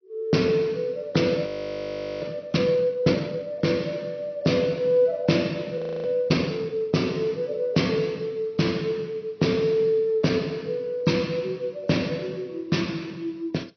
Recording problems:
treble cut off; nothing above 6 kHz
codec artefacts; AAC, log-spectral distance 2 dB
audio freezing; at 1.5 s for 1 s and at 6 s

